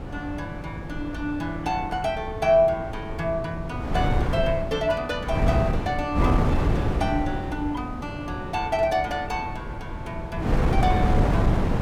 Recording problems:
wind on the microphone; below 290 Hz, SNR 1 dB

